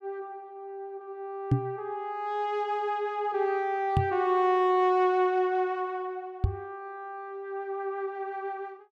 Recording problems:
microphone bump; at 1.5 s, at 4 s and at 6.5 s; peak +8 dB vs average level

